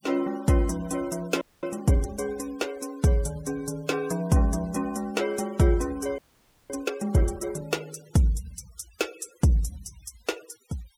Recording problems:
noise reduction artefacts; signal-to-artefact ratio 21 dB
frozen audio; at 1.5 s and at 6 s for 0.5 s

